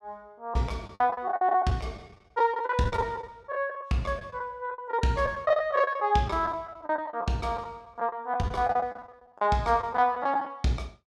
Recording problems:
packet loss; 15% of the sound replaced, filled with the last packet

